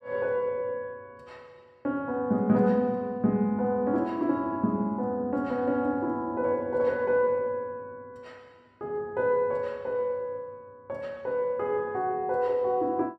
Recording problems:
none

